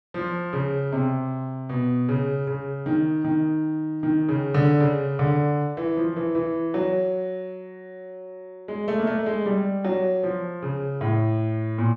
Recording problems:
none

